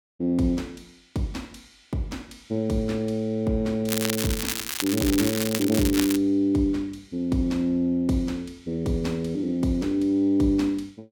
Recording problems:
crackle; from 4 to 6 s; loose cable, SNR 4 dB

